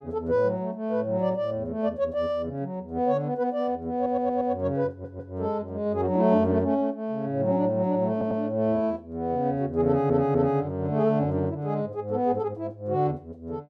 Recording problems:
stutter; 4 times, first at 4 s

